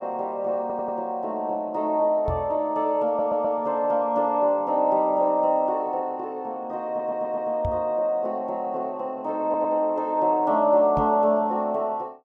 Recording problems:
stutter; 4 times, first at 0.5 s
microphone bump; at 2.5 s, at 7.5 s and at 11 s; peak -3 dB vs average level

